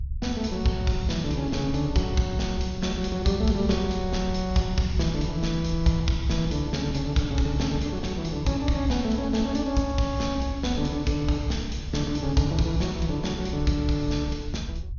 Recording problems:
treble missing; nothing above 6.6 kHz
rumble; below 70 Hz, SNR 9 dB

